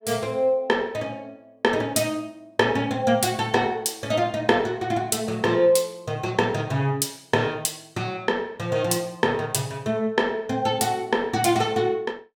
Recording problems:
none

